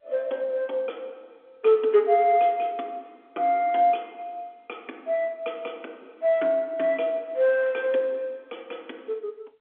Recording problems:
telephone audio; 240 Hz to 3.8 kHz, G.711

